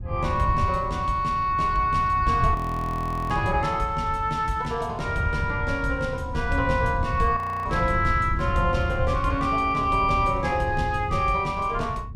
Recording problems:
wind noise; below 110 Hz, SNR 7 dB
audio freezing; at 2.5 s for 1 s and at 7.5 s

